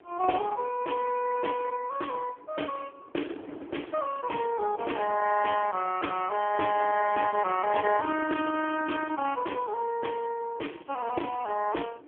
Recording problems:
telephone audio; 260 Hz to 3.3 kHz, AMR-NB
wind noise; below 580 Hz, SNR 18 dB

